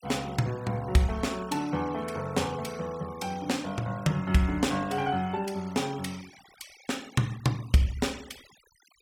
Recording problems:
noise reduction artefacts; signal-to-artefact ratio 20 dB

